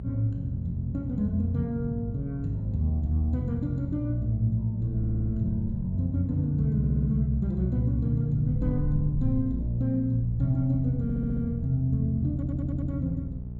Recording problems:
hum; 60 Hz, harmonics up to 420 Hz, SNR 11 dB
wind noise; below 72 Hz, SNR 15 dB
stutter; 4 times, first at 5 s

